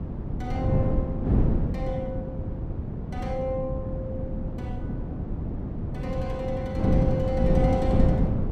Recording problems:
wind noise; below 220 Hz, SNR -5 dB

